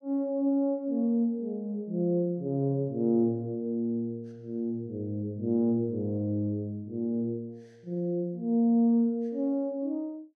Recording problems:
none

